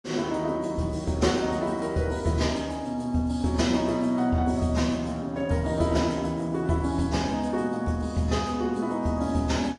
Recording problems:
lossy compression; AAC, log-spectral distance 2 dB, nothing above 10.4 kHz

